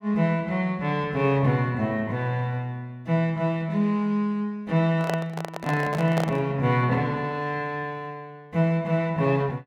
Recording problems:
microphone handling noise; from 5 to 6.5 s; peak +1 dB vs average level

